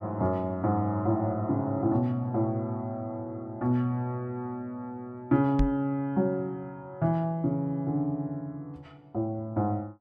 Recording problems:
microphone bump; at 5.5 s; peak +6 dB vs average level

